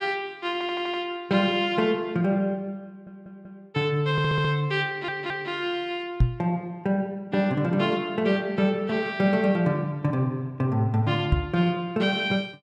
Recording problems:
stutter; 4 times, first at 0.5 s
knock on the microphone; at 6 s and at 11 s; peak +8 dB vs average level

